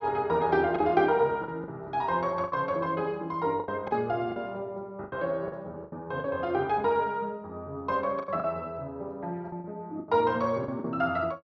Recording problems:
low-pass filter; nothing above 6.4 kHz
lost packets; 8% of the sound replaced, filled with the last packet

